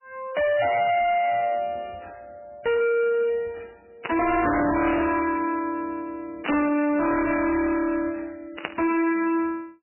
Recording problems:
lossy compression; MP3, log-spectral distance 4 dB, nothing above 2.7 kHz
distortion; hard clipping, signal-to-distortion ratio 6 dB
static burst; at 4 s, at 6.5 s and at 8.5 s; peak -1 dB vs average level

